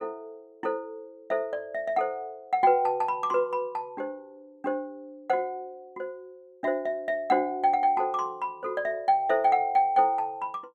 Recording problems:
none

